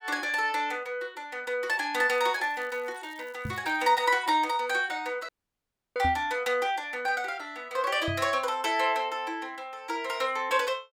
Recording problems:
crackling; from 2 to 4 s; loose cable, SNR 28 dB
microphone thump; at 3.5 s, at 6 s and at 8 s; peak -2 dB vs average level
dropout; at 5.5 s for 0.5 s

